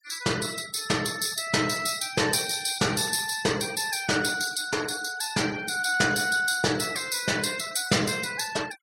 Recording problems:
noise reduction artefacts; signal-to-artefact ratio 16 dB

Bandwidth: 16 kHz